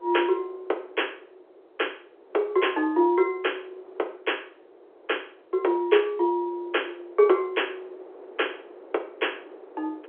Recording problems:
telephone audio; 320 Hz to 3.4 kHz, G.711
wind on the microphone; below 590 Hz, SNR 22 dB

